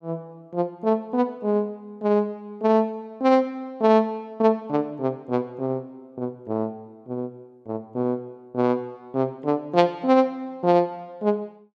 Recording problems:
none

